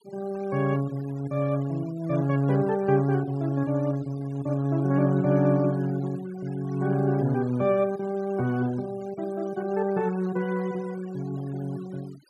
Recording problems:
noise reduction artefacts; signal-to-artefact ratio 21 dB

